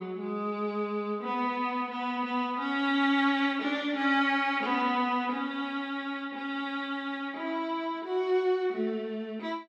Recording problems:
none

